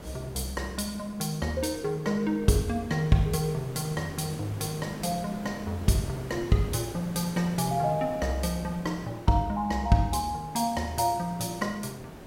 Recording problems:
background hiss; slope -7 dB per octave, SNR 14 dB

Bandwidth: 16 kHz